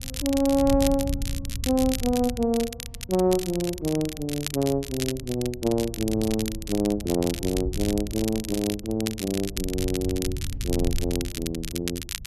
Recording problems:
wind noise; below 98 Hz, SNR 10 dB
crackling; vinyl, SNR 9 dB

